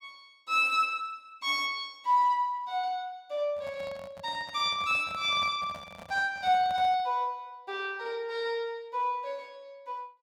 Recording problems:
microphone handling noise; from 3.5 to 7 s; peak -11 dB vs average level

